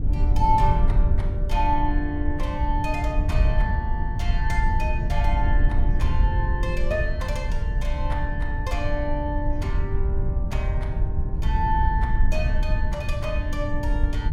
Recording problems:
rumble; below 74 Hz, SNR -3 dB

